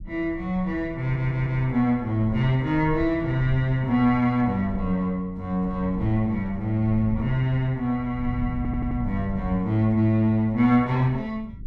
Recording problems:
low-frequency rumble; below 110 Hz, SNR 13 dB
stutter; at 1 s and at 8.5 s

